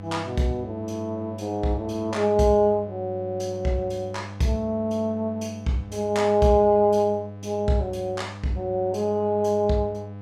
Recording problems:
mains hum; 50 Hz, harmonics up to 1 kHz, SNR 14 dB

